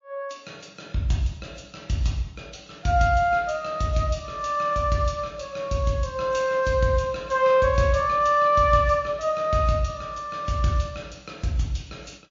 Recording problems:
lossy compression; MP3, log-spectral distance 3 dB, nothing above 6.2 kHz

